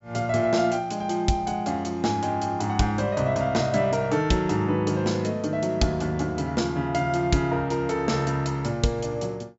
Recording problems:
treble missing; nothing above 8 kHz

